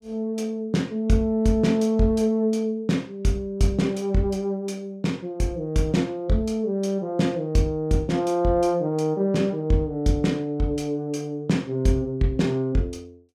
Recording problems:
none

